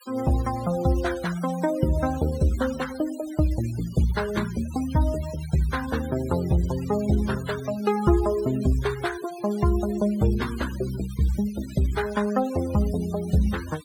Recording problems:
denoising artefacts; signal-to-artefact ratio 17 dB

